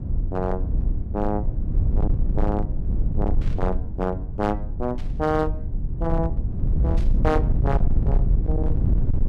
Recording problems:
distortion; hard clipping, uneven, signal-to-distortion ratio 11 dB
rumble; below 84 Hz, SNR -3 dB
burst of static; at 3.5 s, at 5 s and at 7 s; peak -13 dB vs average level

